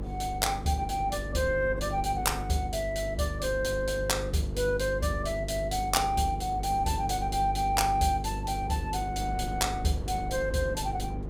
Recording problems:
hum; 50 Hz, harmonics up to 500 Hz, SNR 7 dB
wind on the microphone; below 320 Hz, SNR 14 dB

